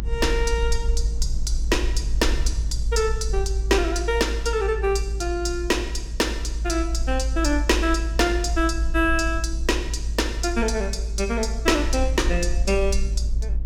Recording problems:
electrical hum; 60 Hz, harmonics up to 540 Hz, SNR 17 dB
rumble; below 56 Hz, strongest tone 54 Hz, SNR 3 dB

